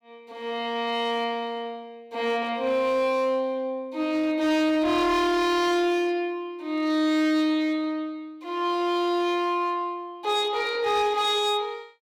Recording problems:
distorted audio; hard clipping, signal-to-distortion ratio 12 dB

